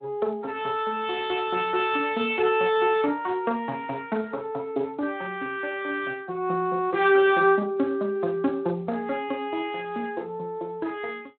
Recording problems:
phone line; 190 Hz to 3.9 kHz, Speex

